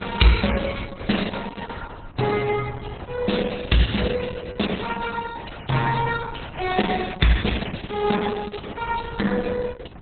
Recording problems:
lossy codec; MP3, then Opus, log-spectral distance 7 dB, nothing above 4 kHz
wind noise; below 280 Hz, SNR 19 dB

